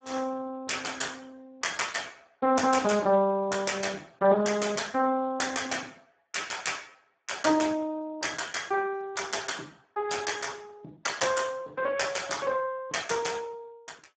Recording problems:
lossy compression; Speex, log-spectral distance 6 dB, nothing above 7.6 kHz

